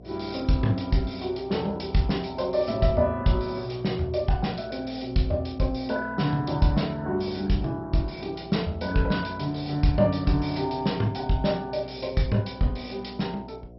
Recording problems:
lossy compression; MP2, log-spectral distance 4 dB, nothing above 5.5 kHz
electrical hum; 60 Hz, harmonics up to 720 Hz, SNR 20 dB

